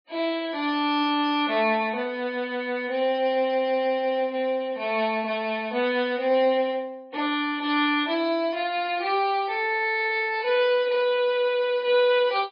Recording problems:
lossy codec; MP3, log-spectral distance 2 dB, nothing above 4.4 kHz

